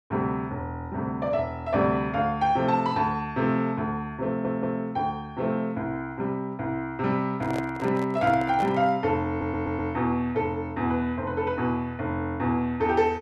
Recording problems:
stutter; at 4.5 s and at 9.5 s
microphone handling noise; from 7.5 to 9 s; peak -5 dB vs average level

